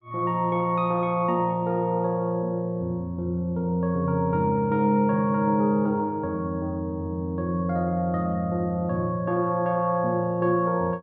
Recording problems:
none

